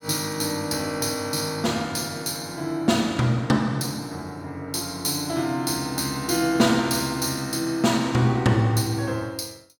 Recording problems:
none

